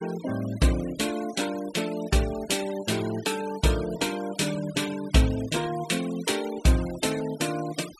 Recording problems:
denoising artefacts; signal-to-artefact ratio 14 dB

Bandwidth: 13.5 kHz